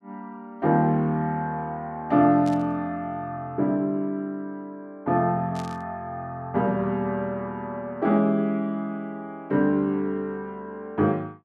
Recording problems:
burst of static; at 2.5 s and at 5.5 s; peak -12 dB vs average level

